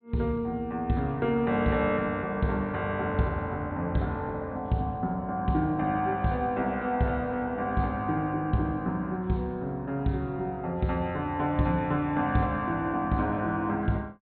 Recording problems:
low-pass filter; nothing above 4.2 kHz

